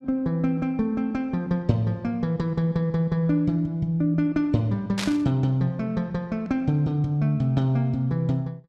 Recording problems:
burst of static; at 5 s; peak -1 dB vs average level

